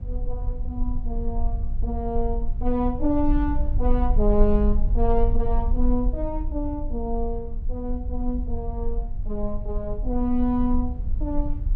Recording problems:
low-frequency rumble; below 48 Hz, strongest tone 18 Hz, SNR 1 dB

